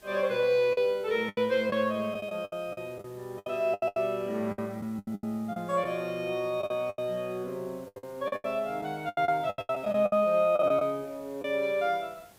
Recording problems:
background hiss; slope -3 dB per octave, SNR 27 dB
packet loss; 14% of the sound replaced, filled with the last packet

